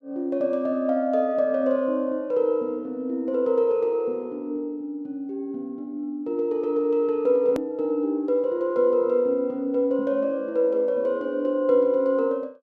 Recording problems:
hard cut with a click; at 7.5 s

